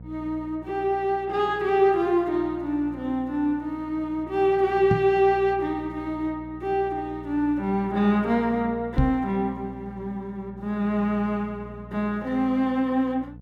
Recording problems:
hum; 60 Hz, harmonics up to 720 Hz, SNR 19 dB
microphone thump; at 5 s and at 9 s; peak +6 dB vs average level

